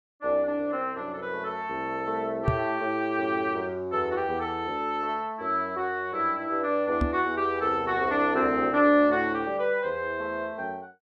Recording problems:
microphone thump; at 2.5 s and at 7 s; peak +5 dB vs average level

